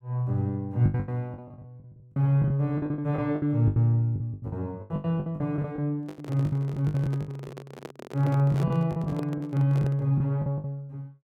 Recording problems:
packet loss; 17% of the sound replaced, filled with the last packet
microphone handling noise; from 6 to 10 s; peak -5 dB vs average level

